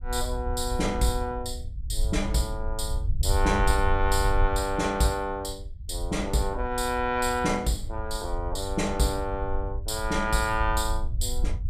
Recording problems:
low-frequency rumble; below 68 Hz, SNR 5 dB

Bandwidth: 15 kHz